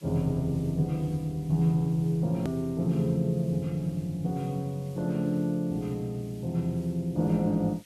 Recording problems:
background hiss; slope +2 dB per octave, SNR 27 dB
hard cut with a click; at 2.5 s

